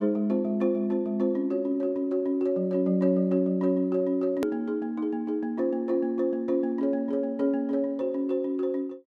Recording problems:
edit click; at 4.5 s

